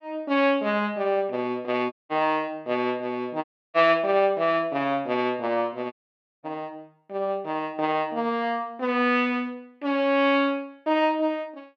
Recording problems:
audio cutting out; at 2 s, at 3.5 s and at 6 s for 0.5 s

